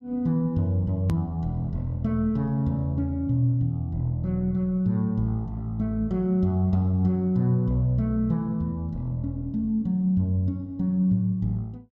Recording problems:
click at an edit; at 1 s

